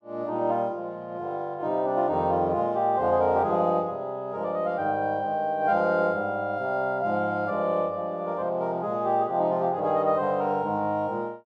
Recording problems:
none

